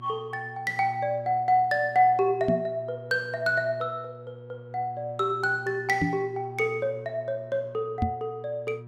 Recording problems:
hum; 60 Hz, harmonics up to 960 Hz, SNR 17 dB
knock on the microphone; at 2.5 s, at 6 s and at 8 s; peak +4 dB vs average level

